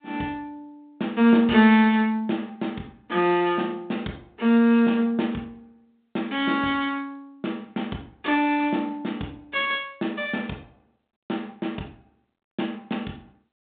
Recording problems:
phone line; 130 Hz to 3.8 kHz, G.726

